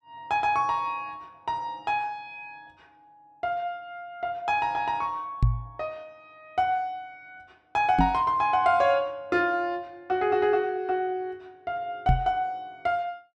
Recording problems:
microphone thump; at 5.5 s, at 8 s and at 12 s; peak +8 dB vs average level

